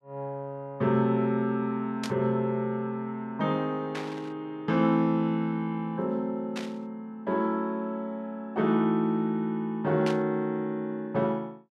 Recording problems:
burst of static; 4 times, first at 2 s; peak -3 dB vs average level

